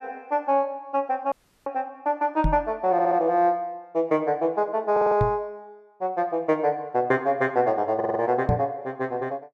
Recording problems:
dropout; at 1.5 s
knock on the microphone; at 2.5 s, at 5 s and at 8.5 s; peak +4 dB vs average level
stutter; at 3 s, at 5 s and at 8 s

